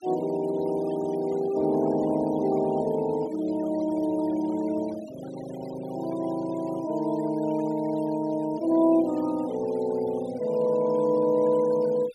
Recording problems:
noise reduction artefacts; signal-to-artefact ratio 20 dB

